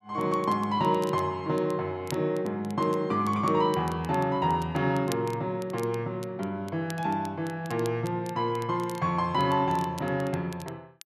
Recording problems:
crackle; vinyl, SNR 21 dB

